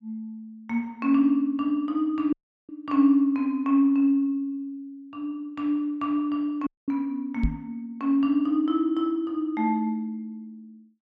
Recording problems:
audio cutting out; at 2.5 s and at 6.5 s
microphone bump; at 7.5 s; peak +3 dB vs average level

